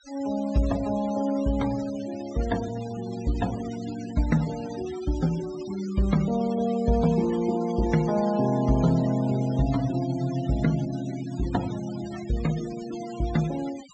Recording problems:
treble cut off; nothing above 8 kHz
denoising artefacts; signal-to-artefact ratio 17 dB

